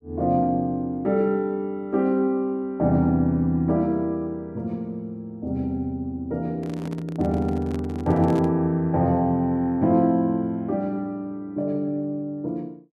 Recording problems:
microphone handling noise; from 6.5 to 8.5 s; peak -6 dB vs average level

